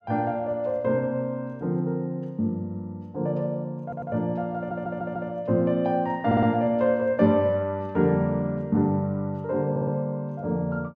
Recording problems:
audio stuttering; 4 times, first at 4 s

